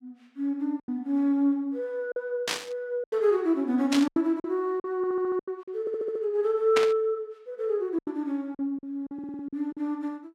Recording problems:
lost packets; 8% of the sound replaced, filled with silence
static burst; at 2.5 s, at 4 s and at 7 s; peak +4 dB vs average level
stutter; at 5 s, at 6 s and at 9 s

